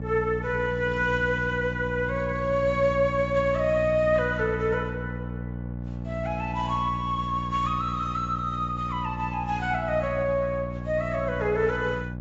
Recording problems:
lossy compression; AAC, log-spectral distance 2 dB, nothing above 7.6 kHz
hum; 60 Hz, harmonics up to 840 Hz, SNR 8 dB

